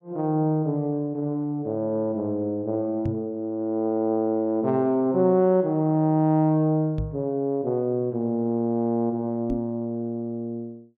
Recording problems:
microphone thump; at 3 s, at 7 s and at 9.5 s; peak -1 dB vs average level

